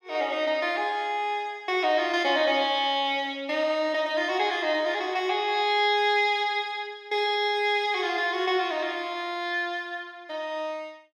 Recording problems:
none

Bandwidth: 15.5 kHz